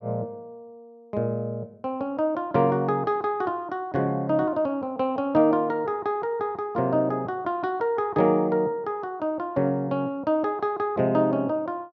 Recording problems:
none

